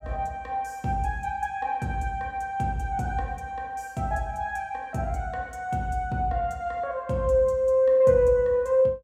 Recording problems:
none

